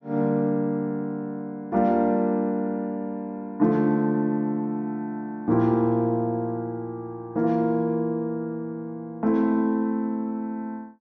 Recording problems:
low-pass filter; nothing above 6.6 kHz

